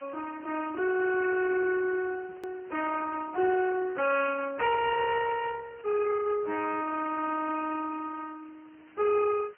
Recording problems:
phone line; 320 Hz to 2.3 kHz, Speex
distortion; hard clipping, uneven, signal-to-distortion ratio 9 dB
background hiss; SNR 27 dB
edit click; at 2.5 s

